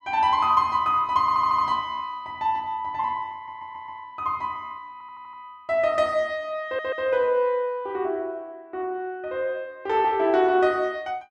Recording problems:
audio stuttering; 4 times, first at 1 s

